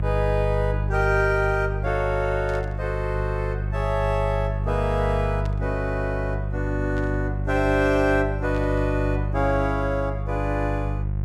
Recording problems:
hum; 50 Hz, harmonics up to 350 Hz, SNR 2 dB
burst of static; 4 times, first at 2.5 s; peak -14 dB vs average level

